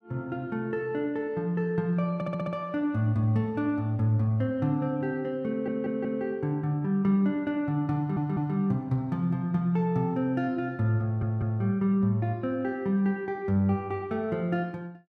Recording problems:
audio stuttering; 4 times, first at 2 s

